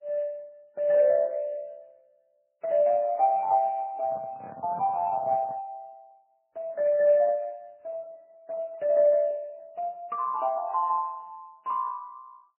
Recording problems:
lossy compression; Speex, then MP3, log-spectral distance 2 dB
microphone handling noise; from 4 to 5.5 s; peak -11 dB vs average level

